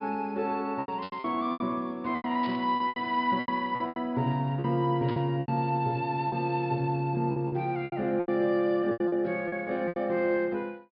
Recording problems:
treble missing; nothing above 5.5 kHz
lost packets; 13% of the sound replaced, filled with repeated pitch periods
burst of static; at 1 s, at 2.5 s and at 5 s; peak -11 dB vs average level

